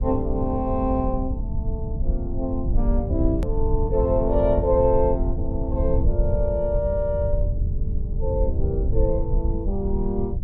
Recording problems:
rumble; below 78 Hz, SNR 1 dB
click at an edit; at 3.5 s

